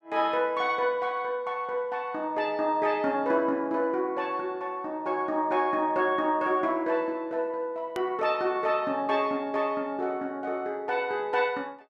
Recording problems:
edit click; at 8 s

